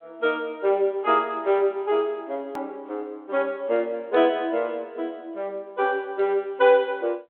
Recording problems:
phone line; 280 Hz to 3.5 kHz, G.726
click at an edit; at 2.5 s

